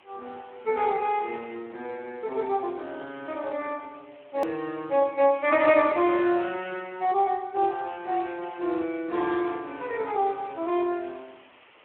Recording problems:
telephone audio; 280 Hz to 3.2 kHz, Speex
background hiss; SNR 28 dB
click at an edit; at 4.5 s

